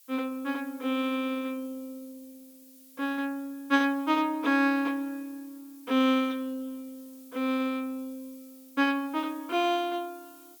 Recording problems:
hiss; slope +5 dB per octave, SNR 24 dB

